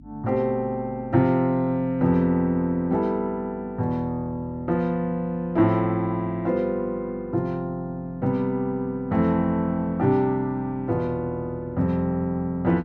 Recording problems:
hum; 50 Hz, harmonics up to 300 Hz, SNR 22 dB

